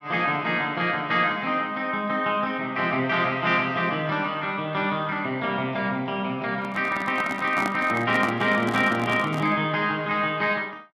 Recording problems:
handling noise; from 6.5 to 9.5 s; peak -1 dB vs average level

